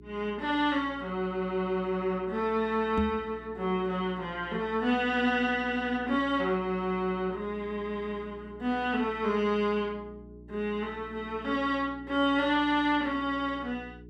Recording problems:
hum; 60 Hz, harmonics up to 420 Hz, SNR 20 dB
microphone bump; at 3 s; peak +5 dB vs average level

